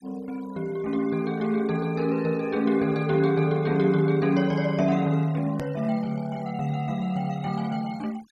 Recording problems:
noise reduction artefacts; signal-to-artefact ratio 24 dB
hard cut with a click; at 5.5 s

